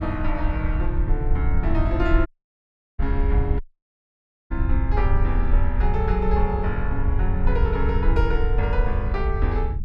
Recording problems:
rumble; below 68 Hz, SNR -3 dB
audio cutting out; at 2.5 s for 0.5 s and at 3.5 s for 1 s

